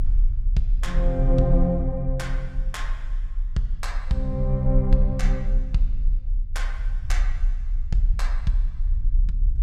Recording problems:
rumble; below 36 Hz, strongest tone 32 Hz, SNR -1 dB

